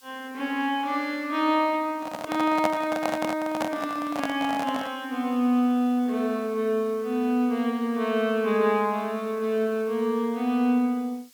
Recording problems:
hiss; slope +4 dB per octave, SNR 27 dB
microphone handling noise; from 2 to 5 s; peak +3 dB vs average level

